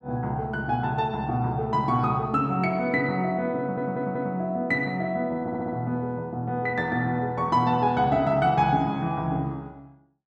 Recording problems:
audio stuttering; at 3.5 s and at 5.5 s

